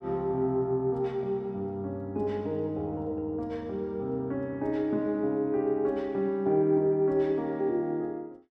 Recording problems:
none

